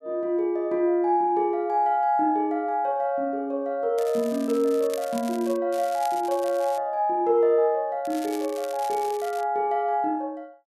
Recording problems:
crackling; from 4 to 5.5 s, from 5.5 to 7 s and from 8 to 9.5 s; loose cable, SNR 19 dB

